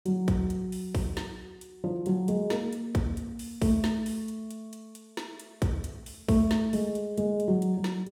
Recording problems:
none

